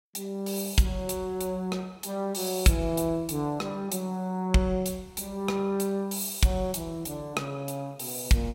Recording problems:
none

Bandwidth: 16 kHz